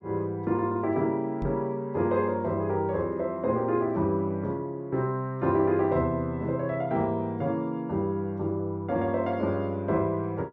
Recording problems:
microphone thump; at 1.5 s; peak -3 dB vs average level

